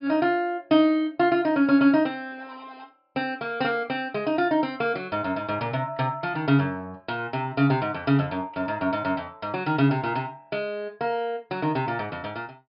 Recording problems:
low-pass filter; nothing above 5.5 kHz

